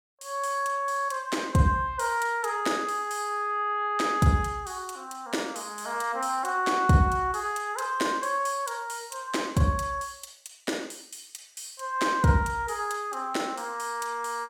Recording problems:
none

